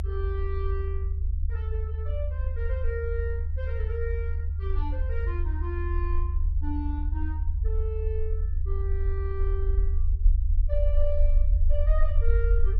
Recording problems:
low-frequency rumble; below 74 Hz, SNR -9 dB

